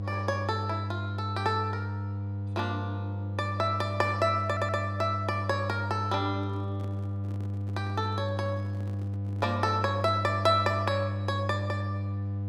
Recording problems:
hum; 50 Hz, harmonics up to 500 Hz, SNR 3 dB
stutter; at 4.5 s
microphone handling noise; from 6.5 to 10 s; peak -11 dB vs average level

